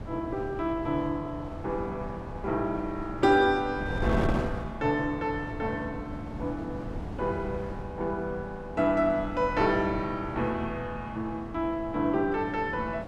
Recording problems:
wind noise; below 400 Hz, SNR 9 dB

